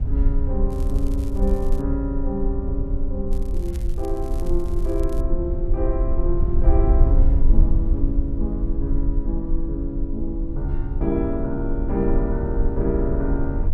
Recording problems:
rumble; below 56 Hz, strongest tone 24 Hz, SNR -3 dB
crackling; from 0.5 to 2 s and from 3.5 to 5 s; loose cable, SNR 22 dB

